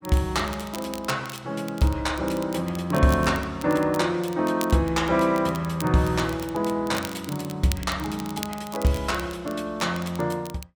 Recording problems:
crackle; vinyl, SNR 16 dB

